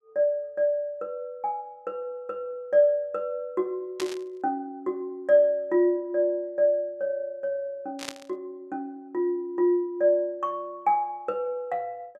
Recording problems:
burst of static; at 4 s and at 8 s; peak -2 dB vs average level

